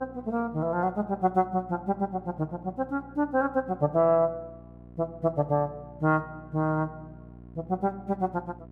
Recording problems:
electrical hum; 60 Hz, harmonics up to 1 kHz, SNR 20 dB

